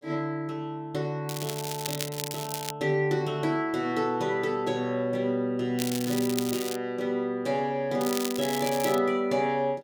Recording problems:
crackle; from 1.5 to 2.5 s, at 6 s and at 8 s; loose cable, SNR 7 dB

